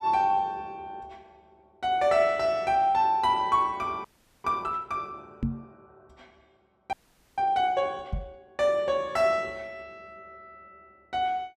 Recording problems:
frozen audio; at 4 s and at 7 s
knock on the microphone; at 5.5 s and at 8 s; peak +2 dB vs average level

